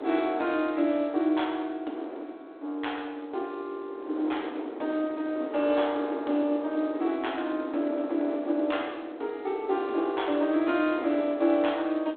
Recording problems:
telephone audio; 240 Hz to 3.8 kHz, G.726
wind on the microphone; below 590 Hz, SNR 11 dB

